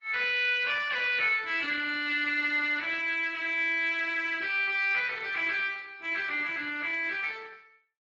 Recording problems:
lossy compression; AAC, then Speex, log-spectral distance 4 dB

